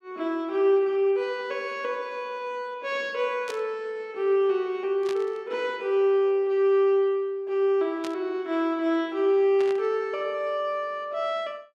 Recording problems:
static burst; 4 times, first at 3.5 s; peak -8 dB vs average level

